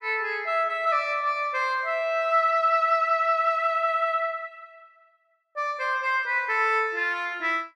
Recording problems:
none

